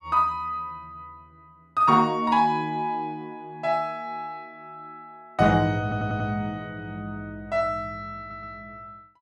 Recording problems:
stutter; at 6 s and at 8 s

